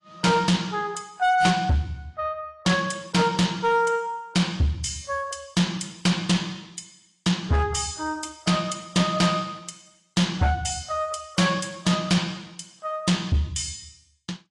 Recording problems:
lossy compression; AAC, log-spectral distance 4 dB
distorted audio; hard clipping, uneven, signal-to-distortion ratio 11 dB

